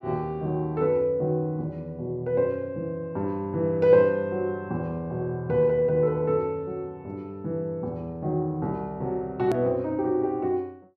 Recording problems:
edit click; at 9.5 s

